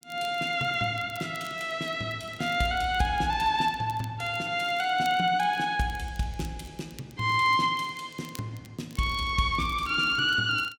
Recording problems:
crackle; vinyl, SNR 25 dB

